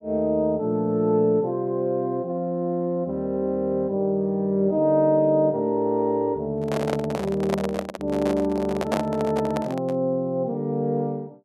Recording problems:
handling noise; from 6.5 to 10 s; peak +2 dB vs average level

